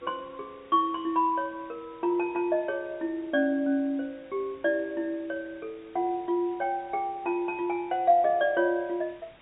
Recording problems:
low-pass filter; nothing above 4 kHz
hiss; SNR 27 dB

